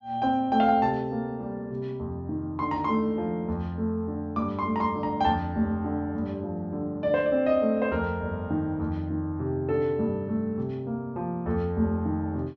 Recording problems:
treble cut off; nothing above 8 kHz

